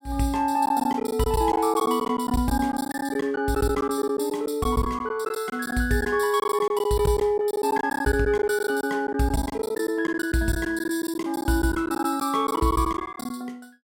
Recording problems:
lost packets; 12% of the sound replaced, filled with silence

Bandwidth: 16 kHz